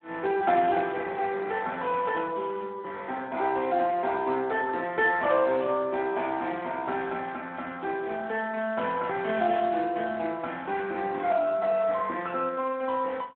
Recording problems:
phone line; 240 Hz to 3.1 kHz, Speex

